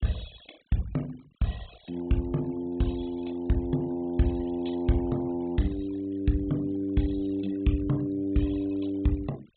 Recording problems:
low-pass filter; nothing above 4 kHz
denoising artefacts; signal-to-artefact ratio 23 dB

